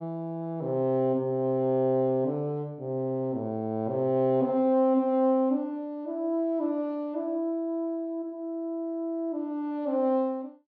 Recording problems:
none

